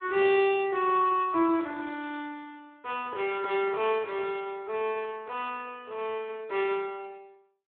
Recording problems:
telephone audio; 260 Hz to 3.8 kHz, Speex

